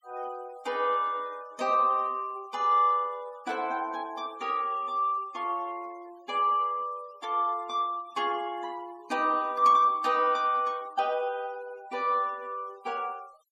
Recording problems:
noise reduction artefacts; signal-to-artefact ratio 26 dB

